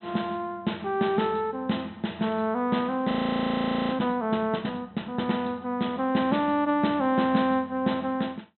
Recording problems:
low-pass filter; nothing above 4 kHz
audio freezing; at 3 s for 1 s

